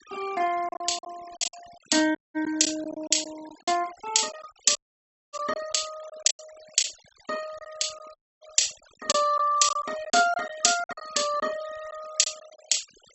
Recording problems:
treble missing; nothing above 7.7 kHz
noise reduction artefacts; signal-to-artefact ratio 21 dB
lost packets; 9% of the sound replaced, filled with silence
audio cutting out; at 2 s, at 5 s for 0.5 s and at 8 s

